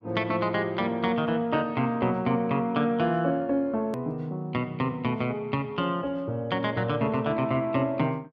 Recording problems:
edit click; at 4 s

